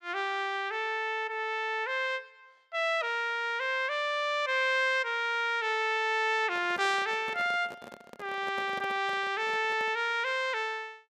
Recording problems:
handling noise; from 6.5 to 10 s; peak -10 dB vs average level

